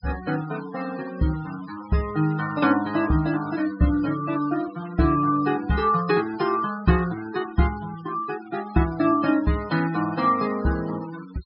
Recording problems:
low-pass filter; nothing above 5.5 kHz
noise reduction artefacts; signal-to-artefact ratio 17 dB

